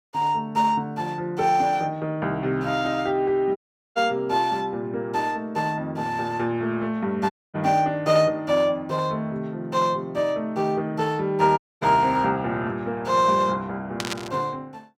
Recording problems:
audio cutting out; at 3.5 s, at 7.5 s and at 12 s
burst of static; at 14 s; peak 0 dB vs average level

